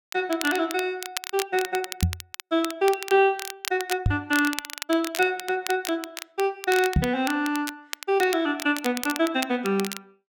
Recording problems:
crackling; vinyl, SNR 10 dB
knock on the microphone; at 2 s, at 4 s and at 7 s; peak +7 dB vs average level

